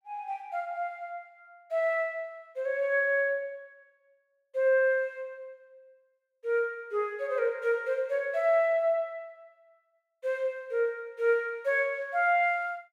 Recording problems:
none

